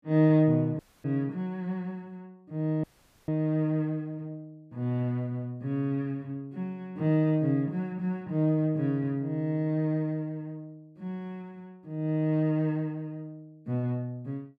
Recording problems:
audio cutting out; at 1 s and at 3 s

